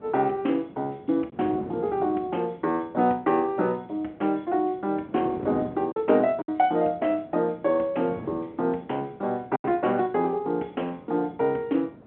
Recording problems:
telephone audio; 220 Hz to 3.3 kHz, G.711
wind noise; below 460 Hz, SNR 17 dB
packet loss; 1.7% of the sound replaced, filled with silence

